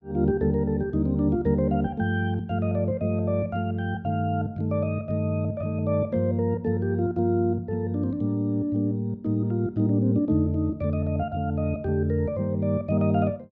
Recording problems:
none

